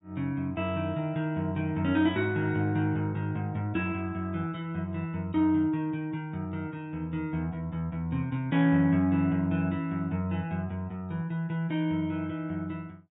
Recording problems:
low-pass filter; nothing above 4 kHz

